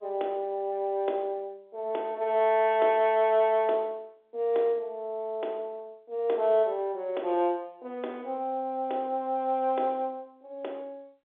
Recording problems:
telephone audio; 300 Hz to 3.5 kHz, G.711

